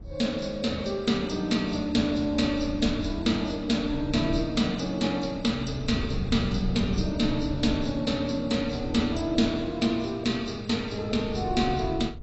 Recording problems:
lossy compression; AAC, log-spectral distance 4 dB, nothing above 7.8 kHz
wind noise; below 110 Hz, SNR 12 dB

